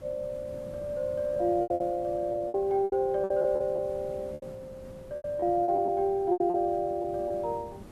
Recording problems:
hiss; slope -7 dB per octave, SNR 19 dB
lost packets; 12% of the sound replaced, filled with repeated pitch periods

